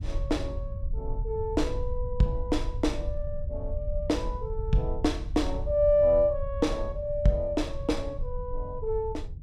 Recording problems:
rumble; below 70 Hz, SNR 7 dB

